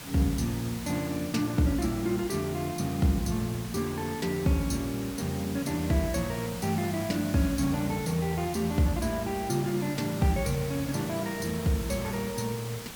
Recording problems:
hum; 50 Hz, harmonics up to 500 Hz, SNR 27 dB
background hiss; slope -2 dB per octave, SNR 12 dB

